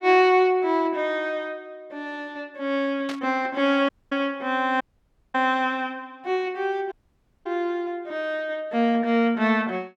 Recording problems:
burst of static; at 3 s; peak -7 dB vs average level
audio cutting out; at 4 s, at 5 s for 0.5 s and at 7 s for 0.5 s

